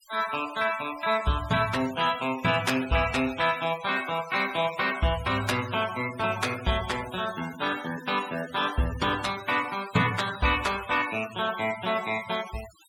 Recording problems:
denoising artefacts; signal-to-artefact ratio 15 dB

